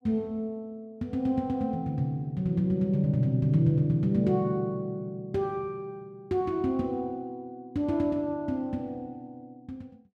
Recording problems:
none

